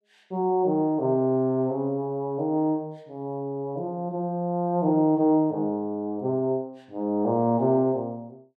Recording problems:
none

